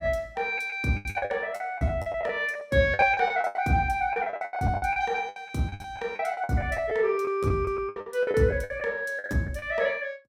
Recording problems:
lost packets; 18% of the sound replaced, filled with the last packet

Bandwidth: 16 kHz